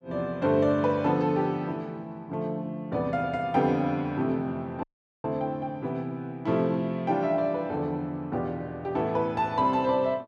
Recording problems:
dropout; at 5 s

